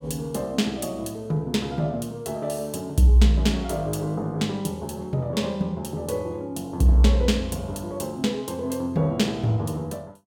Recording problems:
none

